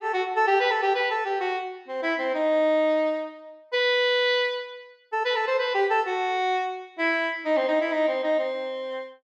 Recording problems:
none

